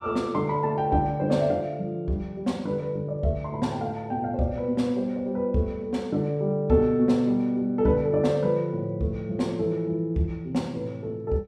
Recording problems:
none

